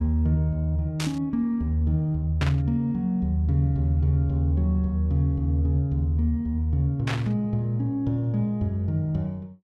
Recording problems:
static burst; at 1 s, at 2.5 s and at 7 s; peak -2 dB vs average level

